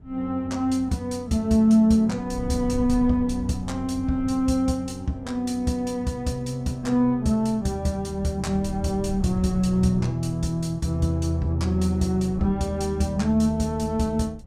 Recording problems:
wind on the microphone; below 120 Hz, SNR 16 dB

